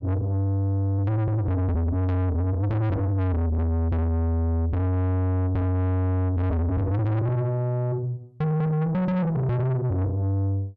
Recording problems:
distortion; soft clipping, signal-to-distortion ratio 7 dB

